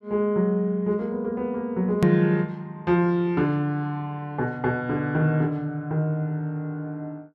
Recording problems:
edit click; at 2 s

